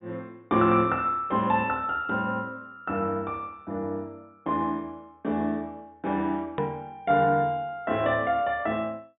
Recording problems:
treble missing; nothing above 4 kHz
edit click; at 6.5 s

